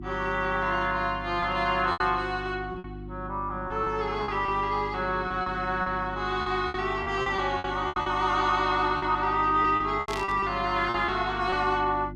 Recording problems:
electrical hum; 50 Hz, harmonics up to 350 Hz, SNR 13 dB
packet loss; 9% of the sound replaced, filled with repeated pitch periods
burst of static; at 10 s; peak -6 dB vs average level

